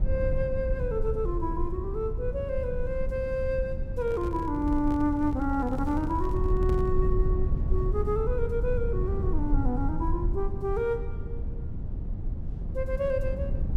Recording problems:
rumble; below 84 Hz, SNR 2 dB
microphone handling noise; from 4 to 7 s; peak -5 dB vs average level

